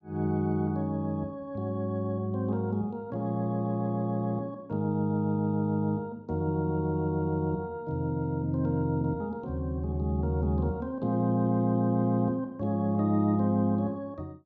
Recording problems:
none

